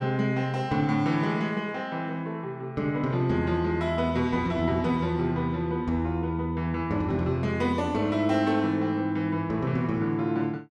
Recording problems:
none

